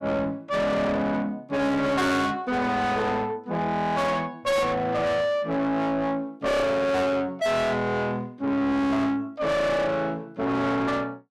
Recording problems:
distorted audio; soft clipping, signal-to-distortion ratio 6 dB

